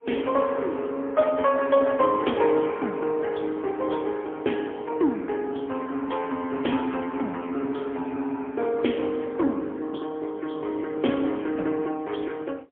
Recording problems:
phone line; 220 Hz to 3.3 kHz, AMR-NB, then MP3

